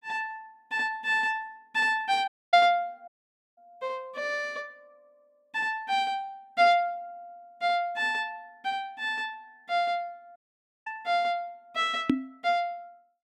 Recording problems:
dropout; at 2.5 s, at 3 s and at 10 s for 0.5 s
knock on the microphone; at 12 s; peak +8 dB vs average level

